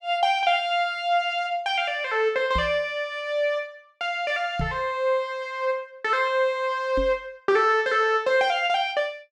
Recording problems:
microphone bump; at 2.5 s, at 4.5 s and at 7 s; peak -2 dB vs average level

